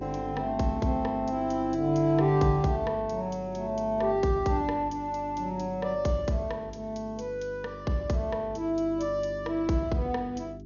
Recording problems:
treble cut off; nothing above 6.7 kHz
hum; 50 Hz, harmonics up to 400 Hz, SNR 14 dB

